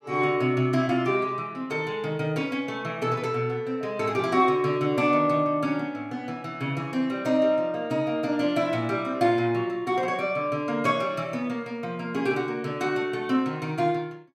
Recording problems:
none

